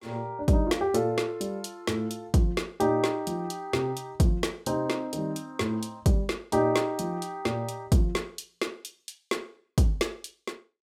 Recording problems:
none

